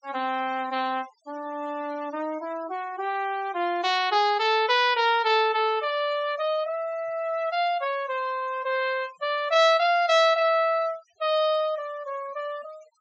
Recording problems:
treble cut off; nothing above 8 kHz
noise reduction artefacts; signal-to-artefact ratio 23 dB

